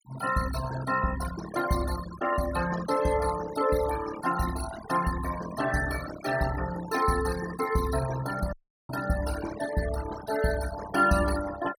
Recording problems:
noise reduction artefacts; signal-to-artefact ratio 9 dB
audio cutting out; at 8.5 s

